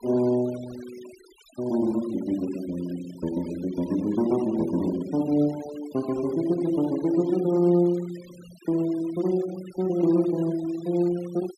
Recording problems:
noise reduction artefacts; signal-to-artefact ratio 21 dB

